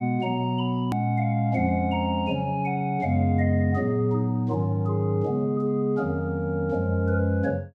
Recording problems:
edit click; at 1 s

